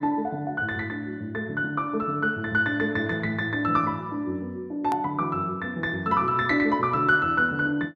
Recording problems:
hard cut with a click; at 5 s

